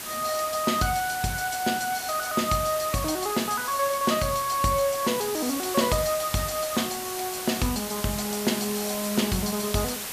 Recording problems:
hiss; slope -1 dB per octave, SNR 6 dB

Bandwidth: 14.5 kHz